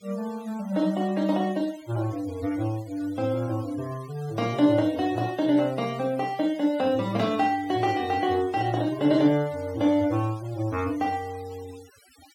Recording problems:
noise reduction artefacts; signal-to-artefact ratio 22 dB

